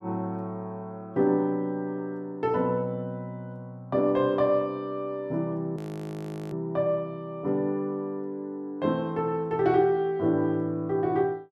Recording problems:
audio freezing; at 6 s for 1 s

